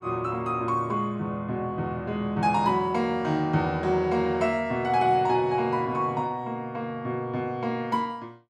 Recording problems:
none

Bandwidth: 14.5 kHz